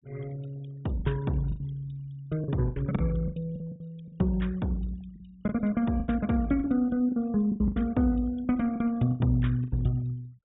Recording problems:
treble cut off; nothing above 3.7 kHz
denoising artefacts; signal-to-artefact ratio 26 dB
packet loss; 11% of the sound replaced, filled with the last packet

